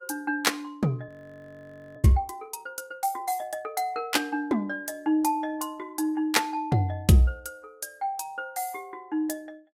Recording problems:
codec artefacts; Vorbis, log-spectral distance 2 dB, nothing above 15.1 kHz
frozen audio; at 1 s for 1 s

